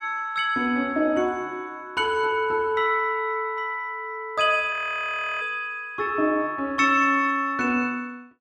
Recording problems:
frozen audio; at 4.5 s for 0.5 s

